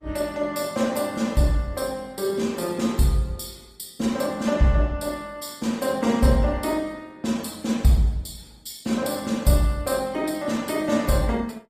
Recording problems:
lossy codec; Opus, log-spectral distance 4 dB, nothing above 15.1 kHz

